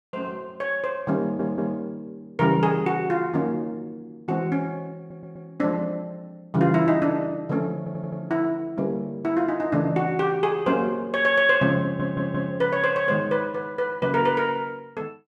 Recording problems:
audio stuttering; 4 times, first at 1 s

